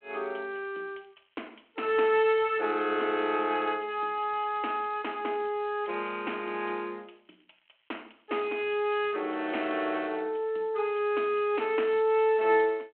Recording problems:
phone line; 260 Hz to 3.3 kHz, G.726
crackle; from 1 to 2.5 s and from 7 to 11 s; loose cable, SNR 41 dB

